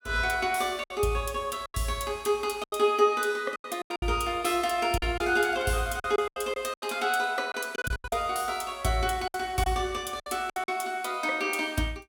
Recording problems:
packet loss; 10% of the sound replaced, filled with silence

